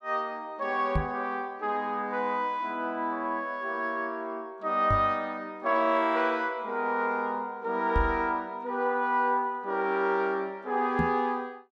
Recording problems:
microphone bump; 4 times, first at 1 s; peak +4 dB vs average level

